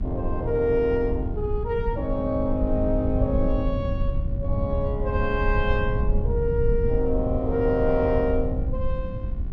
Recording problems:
hum; 60 Hz, harmonics up to 1.9 kHz, SNR 20 dB
low-frequency rumble; below 96 Hz, SNR 2 dB

